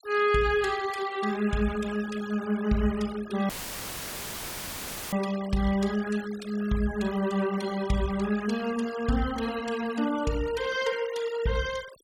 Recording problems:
denoising artefacts; signal-to-artefact ratio 15 dB
audio cutting out; at 3.5 s for 1.5 s; filled with static

